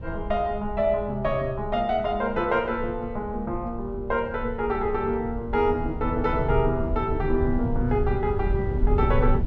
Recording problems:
low-frequency rumble; below 88 Hz, SNR 7 dB

